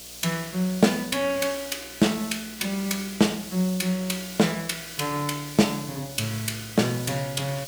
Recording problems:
hum; 60 Hz, harmonics up to 720 Hz, SNR 27 dB
background hiss; SNR 12 dB

